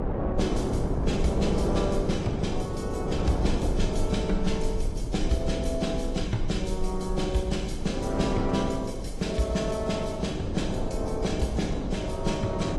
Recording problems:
lossy compression; AAC, log-spectral distance 3 dB, nothing above 11.3 kHz
hum; 50 Hz, harmonics up to 300 Hz, SNR 18 dB
rumble; below 50 Hz, strongest tone 20 Hz, SNR 8 dB
wind on the microphone; below 440 Hz, SNR 3 dB

